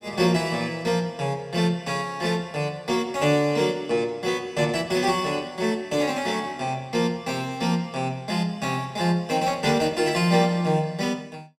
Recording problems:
none

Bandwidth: 16 kHz